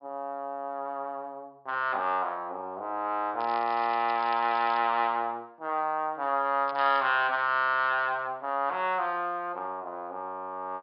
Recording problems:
treble cut off; nothing above 5.5 kHz
crackling; from 3.5 to 5 s and at 6.5 s; loose cable, SNR 20 dB

